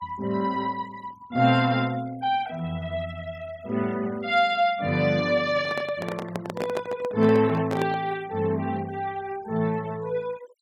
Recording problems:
denoising artefacts; signal-to-artefact ratio 24 dB
handling noise; from 5.5 to 8 s; peak -1 dB vs average level

